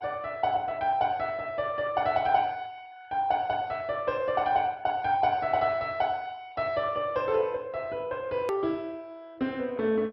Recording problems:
lossy codec; MP2, log-spectral distance 2 dB, nothing above 13.1 kHz
click at an edit; at 8.5 s

